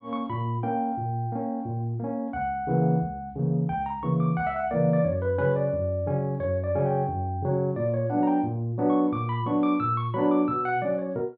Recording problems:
none

